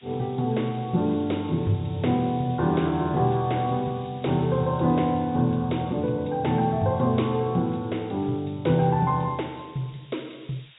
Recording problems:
low-pass filter; nothing above 4 kHz
background hiss; SNR 27 dB

